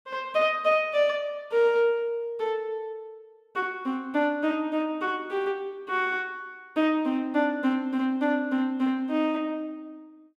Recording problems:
none

